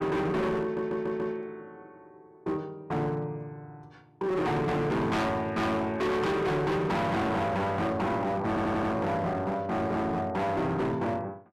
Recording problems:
distorted audio; hard clipping, signal-to-distortion ratio 6 dB
stutter; at 0.5 s and at 8.5 s

